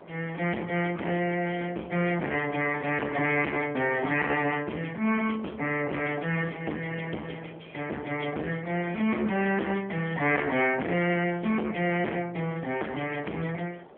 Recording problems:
telephone audio; 240 Hz to 3.1 kHz, AMR-NB
distorted audio; hard clipping, signal-to-distortion ratio 7 dB
wind on the microphone; below 740 Hz, SNR 21 dB

